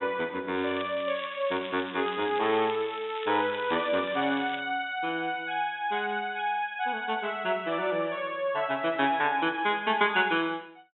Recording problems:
treble missing; nothing above 3.7 kHz
crackling; from 0.5 to 4.5 s; loose cable, SNR 14 dB

